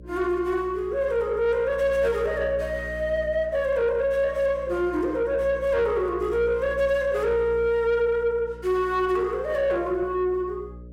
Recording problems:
distortion; soft clipping, signal-to-distortion ratio 12 dB
hum; 60 Hz, harmonics up to 600 Hz, SNR 17 dB

